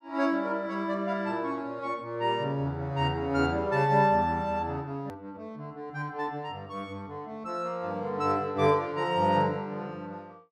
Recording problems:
click at an edit; at 5 s

